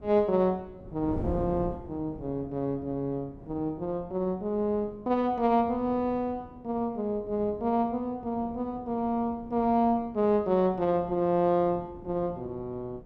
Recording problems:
wind noise; below 330 Hz, SNR 16 dB

